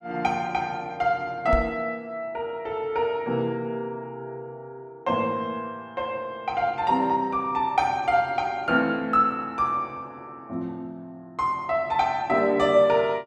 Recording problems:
microphone thump; at 1.5 s; peak +2 dB vs average level

